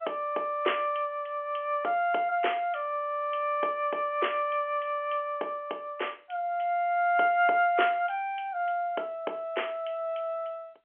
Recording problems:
phone line; 340 Hz to 3.3 kHz, G.711

